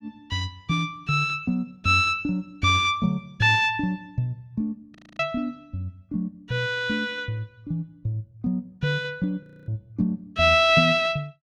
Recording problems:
frozen audio; at 5 s and at 9.5 s

